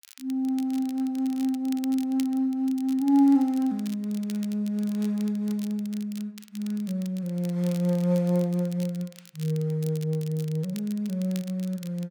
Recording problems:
crackling; vinyl, SNR 21 dB

